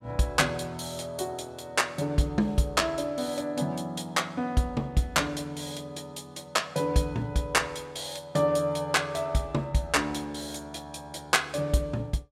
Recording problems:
none

